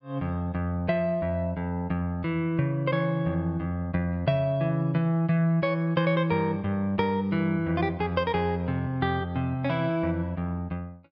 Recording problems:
treble cut off; nothing above 5.5 kHz

